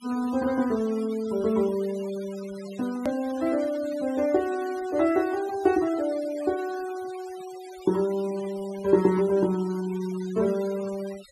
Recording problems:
denoising artefacts; signal-to-artefact ratio 19 dB
click at an edit; at 3 s

